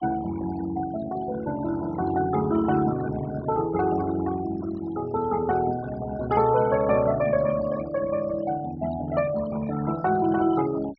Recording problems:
treble missing; nothing above 5.6 kHz
noise reduction artefacts; signal-to-artefact ratio 14 dB

